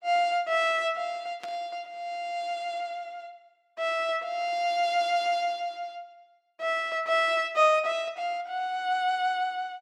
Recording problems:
burst of static; at 1.5 s; peak -11 dB vs average level

